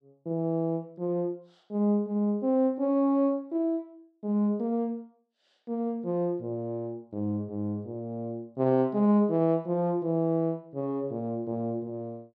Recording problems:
none

